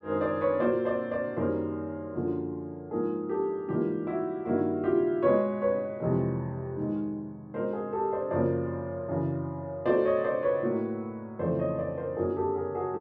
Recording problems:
none

